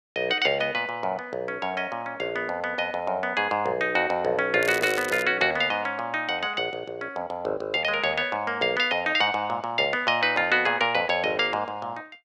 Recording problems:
crackling; at 4.5 s; loose cable, SNR 12 dB

